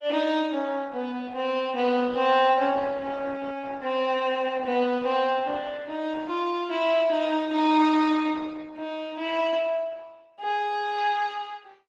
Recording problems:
lossy codec; Opus, log-spectral distance 3 dB

